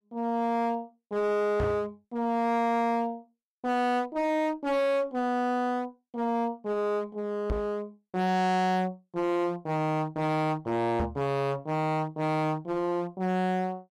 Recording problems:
distorted audio; hard clipping, uneven, signal-to-distortion ratio 6 dB
microphone bump; at 1.5 s, at 7.5 s and at 11 s; peak +2 dB vs average level

